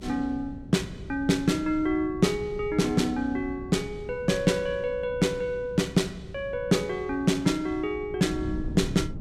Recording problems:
electrical hum; 60 Hz, harmonics up to 600 Hz, SNR 21 dB
wind on the microphone; below 190 Hz, SNR 15 dB

